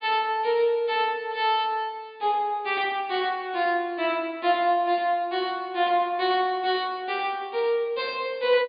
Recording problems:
low-pass filter; nothing above 4.8 kHz

